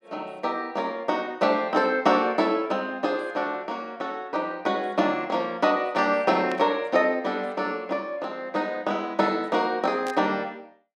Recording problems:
static burst; at 6.5 s and at 10 s; peak -8 dB vs average level

